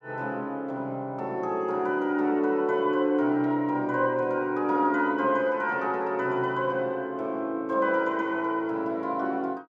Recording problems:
none

